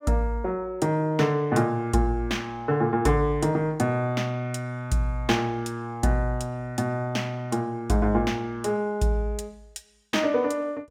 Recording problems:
none

